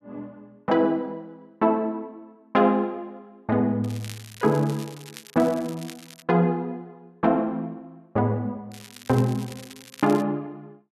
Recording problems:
crackle; from 4 to 6 s and from 8.5 to 10 s; loose cable, SNR 19 dB

